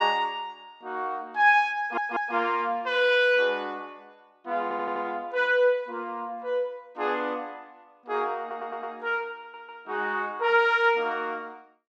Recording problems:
stutter; 4 times, first at 2 s

